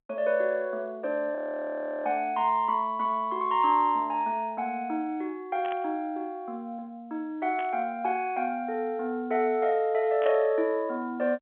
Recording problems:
phone line; 220 Hz to 3.9 kHz, G.711
audio freezing; at 1.5 s for 0.5 s
burst of static; at 5.5 s, at 7.5 s and at 10 s; peak -9 dB vs average level

